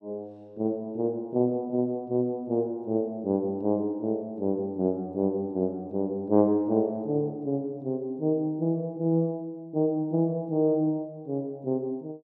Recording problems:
none

